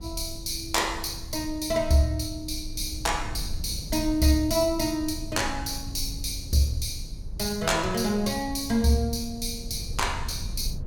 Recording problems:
low-frequency rumble; below 82 Hz, SNR 11 dB

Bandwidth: 17.5 kHz